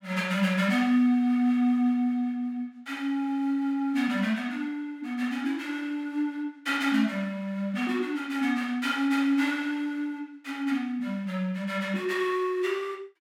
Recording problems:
none

